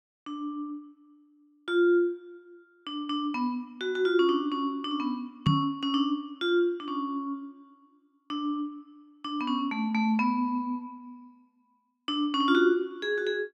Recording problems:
knock on the microphone; at 5.5 s; peak +7 dB vs average level

